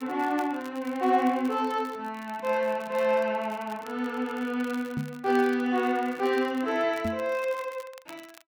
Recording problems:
crackle; vinyl, SNR 23 dB
knock on the microphone; at 5 s and at 7 s; peak -1 dB vs average level

